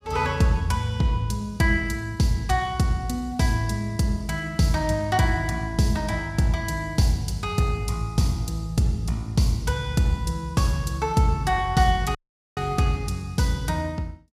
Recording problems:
dropout; at 12 s

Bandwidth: 15.5 kHz